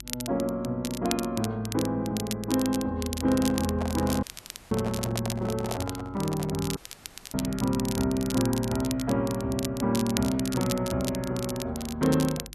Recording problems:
hum; 50 Hz, harmonics up to 350 Hz, SNR 20 dB
crackling; vinyl, SNR 10 dB
handling noise; from 3 to 6.5 s; peak -2 dB vs average level
audio cutting out; at 4 s and at 7 s for 0.5 s

